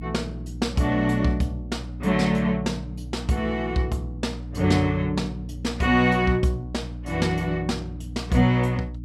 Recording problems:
hum; 60 Hz, harmonics up to 300 Hz, SNR 11 dB

